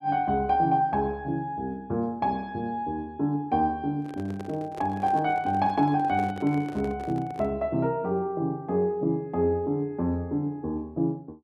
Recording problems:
handling noise; from 4 to 7.5 s; peak -9 dB vs average level

